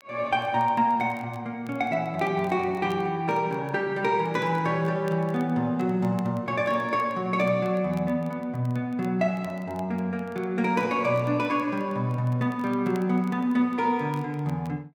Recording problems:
crackle; vinyl, SNR 30 dB

